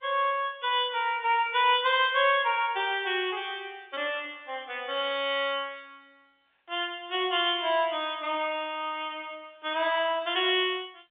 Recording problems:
telephone audio; 260 Hz to 3.6 kHz, G.711

